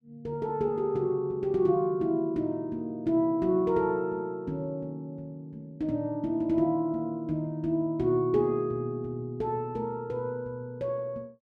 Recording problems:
none

